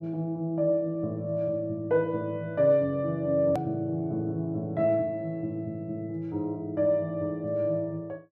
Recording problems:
click at an edit; at 3.5 s

